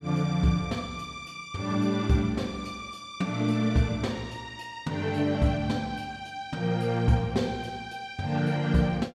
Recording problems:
none

